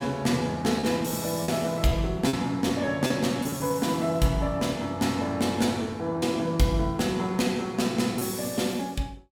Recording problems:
packet loss; 4% of the sound replaced, filled with repeated pitch periods

